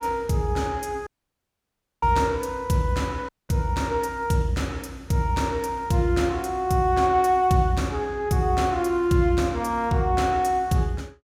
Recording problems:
audio cutting out; at 1 s for 1 s and at 3.5 s

